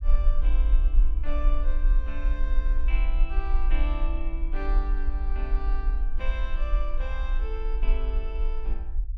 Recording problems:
rumble; below 42 Hz, SNR -11 dB

